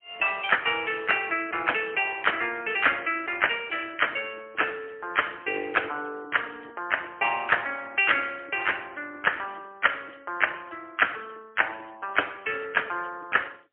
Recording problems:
telephone audio; 240 Hz to 3.3 kHz, AMR-NB, then MP3

